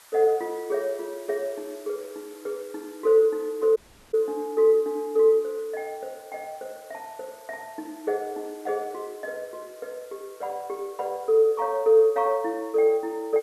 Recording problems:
hiss; SNR 26 dB
audio cutting out; at 4 s

